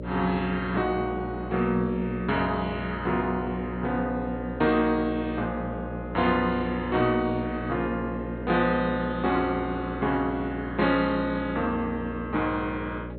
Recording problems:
lossy codec; MP2, log-spectral distance 2 dB, nothing above 3.9 kHz
hum; 60 Hz, harmonics up to 600 Hz, SNR 9 dB

